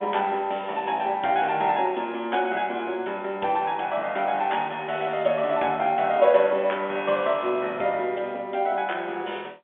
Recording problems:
telephone audio; 220 Hz to 3.5 kHz, G.711

